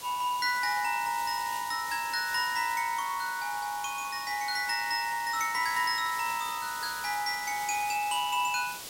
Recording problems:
hiss; SNR 11 dB

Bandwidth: 16 kHz